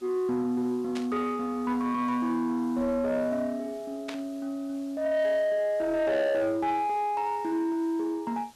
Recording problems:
distorted audio; soft clipping, signal-to-distortion ratio 12 dB
background hiss; slope -1 dB per octave, SNR 27 dB
static burst; at 1 s and at 4 s; peak -5 dB vs average level

